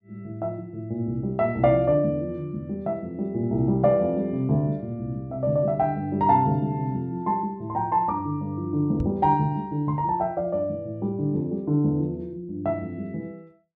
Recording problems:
microphone bump; at 9 s; peak +2 dB vs average level

